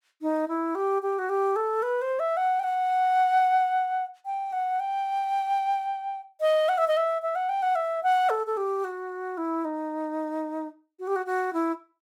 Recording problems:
none

